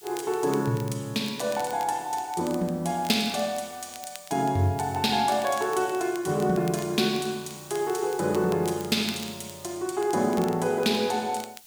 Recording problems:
hiss; SNR 23 dB
crackle; vinyl, SNR 19 dB

